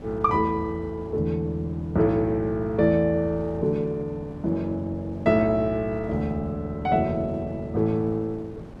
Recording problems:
wind noise; below 420 Hz, SNR 19 dB

